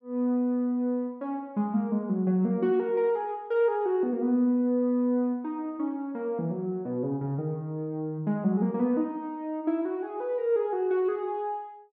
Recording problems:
none

